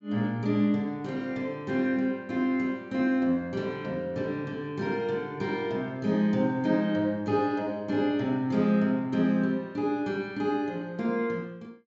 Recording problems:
treble cut off; nothing above 8 kHz

